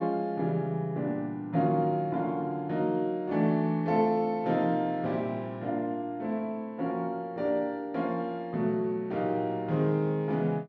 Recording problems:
none

